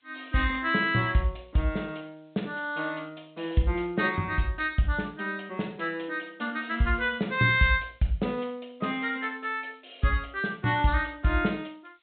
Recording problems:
treble missing; nothing above 4 kHz
hiss; SNR 41 dB

